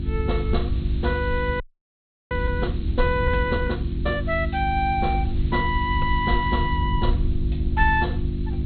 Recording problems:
treble missing; nothing above 4.3 kHz
mains hum; 50 Hz, harmonics up to 350 Hz, SNR 5 dB
hiss; SNR 23 dB
rumble; below 72 Hz, SNR 2 dB
frozen audio; at 1.5 s for 0.5 s

